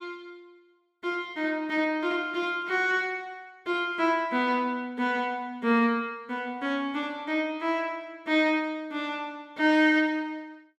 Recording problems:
none

